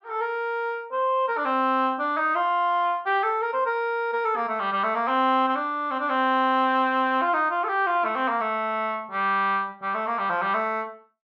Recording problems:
none

